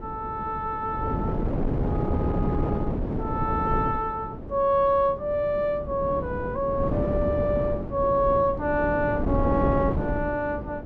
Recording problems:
wind noise; below 360 Hz, SNR 4 dB

